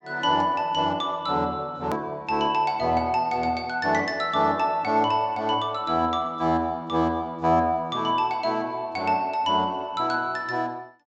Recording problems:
treble cut off; nothing above 8 kHz
edit click; at 2 s

